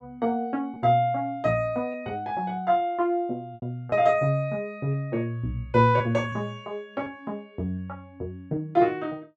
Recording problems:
packet loss; 3% of the sound replaced, filled with repeated pitch periods

